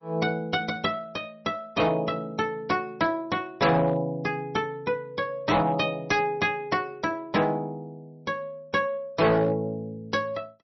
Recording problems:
codec artefacts; MP3, log-spectral distance 2 dB, nothing above 5.8 kHz
distortion; hard clipping, signal-to-distortion ratio 11 dB

